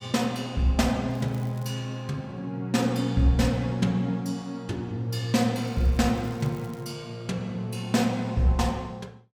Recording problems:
crackling; at 1 s and from 5.5 to 7 s; loose cable, SNR 27 dB

